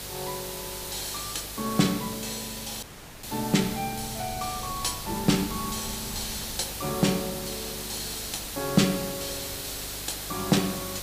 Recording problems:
hum; 50 Hz, harmonics up to 600 Hz, SNR 17 dB
hiss; slope 0 dB per octave, SNR 5 dB
wind on the microphone; below 190 Hz, SNR 18 dB
audio cutting out; at 3 s

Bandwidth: 15 kHz